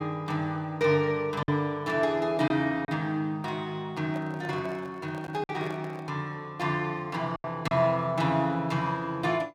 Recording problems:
lost packets; 3% of the sound replaced, filled with silence
handling noise; from 4 to 6 s; peak -10 dB vs average level

